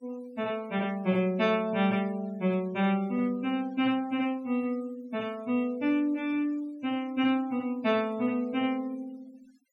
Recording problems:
noise reduction artefacts; signal-to-artefact ratio 25 dB

